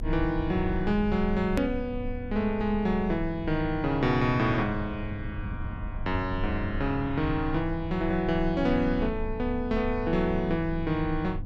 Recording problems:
electrical hum; 50 Hz, harmonics up to 500 Hz, SNR 15 dB
rumble; below 70 Hz, strongest tone 26 Hz, SNR 10 dB
edit click; at 1.5 s

